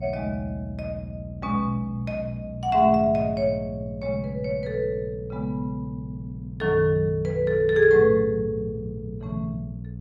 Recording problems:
hum; 60 Hz, harmonics up to 480 Hz, SNR 13 dB

